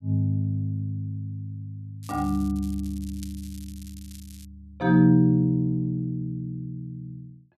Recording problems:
crackle; from 2 to 4.5 s; loose cable, SNR 23 dB

